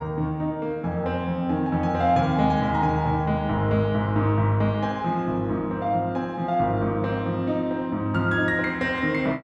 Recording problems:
none

